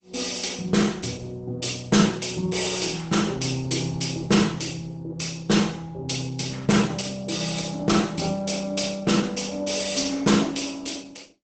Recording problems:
lossy compression; Opus, log-spectral distance 6 dB, nothing above 8 kHz

